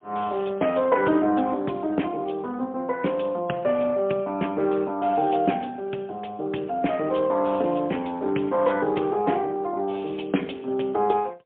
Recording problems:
phone line; 220 Hz to 3.4 kHz, AMR-NB, then MP3

